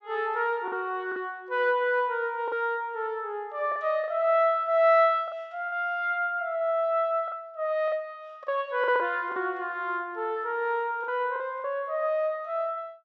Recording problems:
lost packets; 5% of the sound replaced, filled with the last packet

